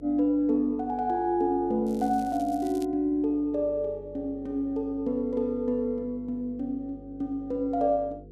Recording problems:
hum; 50 Hz, harmonics up to 500 Hz, SNR 20 dB
crackling; from 2 to 3 s; loose cable, SNR 23 dB

